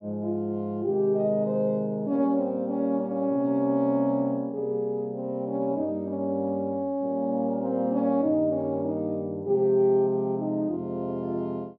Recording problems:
none

